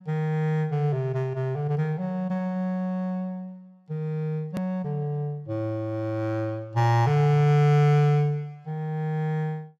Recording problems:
click at an edit; at 4.5 s

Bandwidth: 14.5 kHz